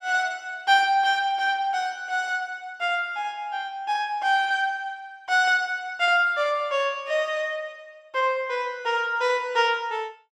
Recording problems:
none

